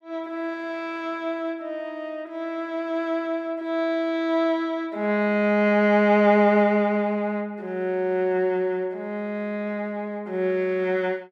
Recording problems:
none

